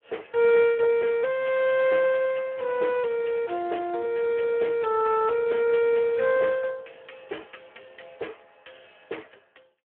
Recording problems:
telephone audio; 280 Hz to 3 kHz, Speex

